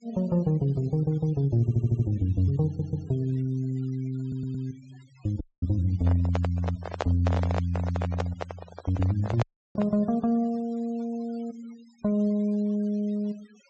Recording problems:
low-pass filter; nothing above 8 kHz
denoising artefacts; signal-to-artefact ratio 25 dB
audio stuttering; at 1.5 s, at 2.5 s and at 4 s
audio cutting out; at 5.5 s and at 9.5 s
microphone handling noise; from 6 to 10 s; peak +3 dB vs average level

